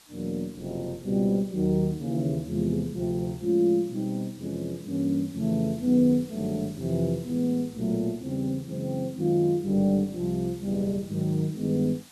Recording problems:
hiss; slope +1 dB per octave, SNR 24 dB

